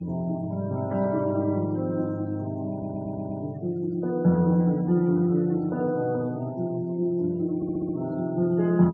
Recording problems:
noise reduction artefacts; signal-to-artefact ratio 25 dB
audio stuttering; at 2.5 s and at 7.5 s

